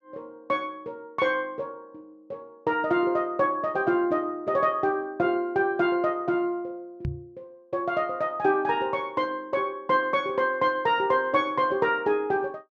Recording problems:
microphone thump; at 7 s; peak -1 dB vs average level

